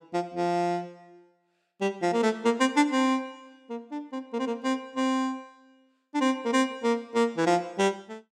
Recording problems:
none

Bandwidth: 16 kHz